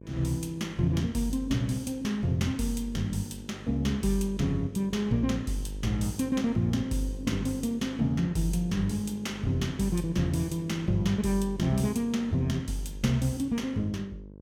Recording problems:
hum; 50 Hz, harmonics up to 650 Hz, SNR 16 dB

